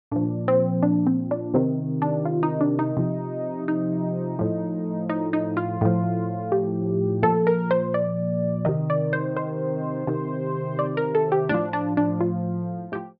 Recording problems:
treble missing; nothing above 5.5 kHz

